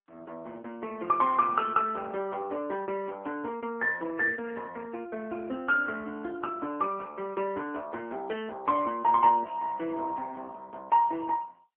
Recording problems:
telephone audio; 240 Hz to 3.2 kHz, AMR-NB

